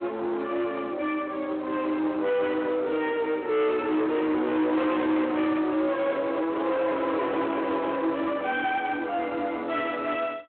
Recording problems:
telephone audio; 260 Hz to 3.4 kHz, Speex
distortion; soft clipping, signal-to-distortion ratio 7 dB
microphone handling noise; from 6 to 8 s; peak 0 dB vs average level

